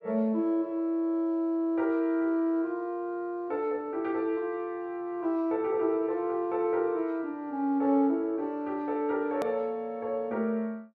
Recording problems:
edit click; at 9.5 s

